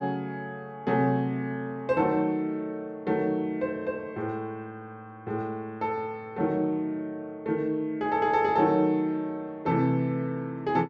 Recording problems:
none

